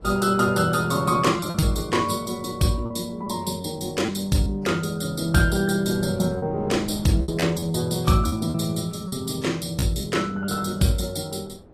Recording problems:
lossy codec; AAC, log-spectral distance 4 dB, nothing above 15.1 kHz
wind on the microphone; below 510 Hz, SNR 22 dB
lost packets; 5% of the sound replaced, filled with repeated pitch periods

